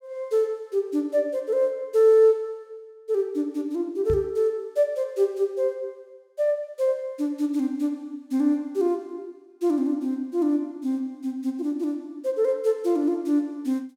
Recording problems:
microphone bump; at 4 s; peak -1 dB vs average level

